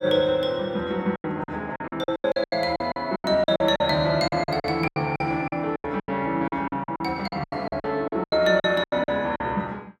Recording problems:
packet loss; 19% of the sound replaced, filled with silence

